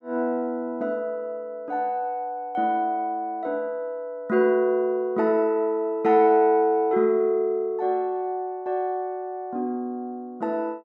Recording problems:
none

